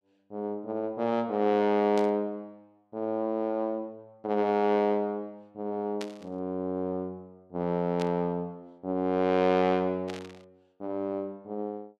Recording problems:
burst of static; 4 times, first at 2 s; peak -6 dB vs average level

